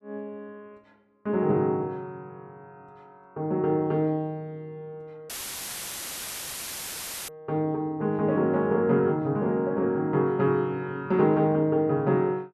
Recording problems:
audio cutting out; at 5.5 s for 2 s; filled with static

